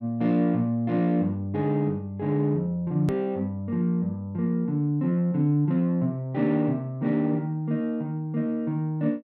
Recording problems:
click at an edit; at 3 s

